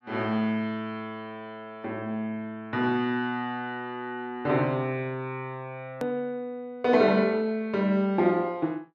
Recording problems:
edit click; at 6 s

